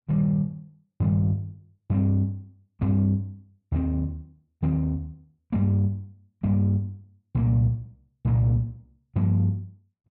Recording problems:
none

